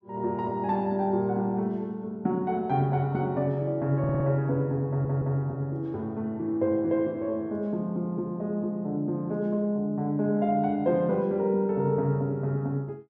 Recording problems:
stutter; at 4 s and at 5 s

